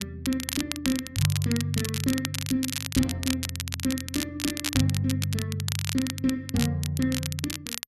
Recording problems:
crackling; vinyl, SNR 4 dB

